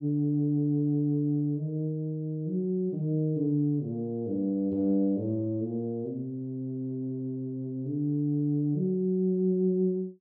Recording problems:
none

